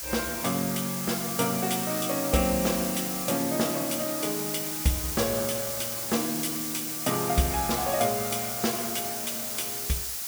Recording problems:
background hiss; slope +2 dB per octave, SNR 1 dB

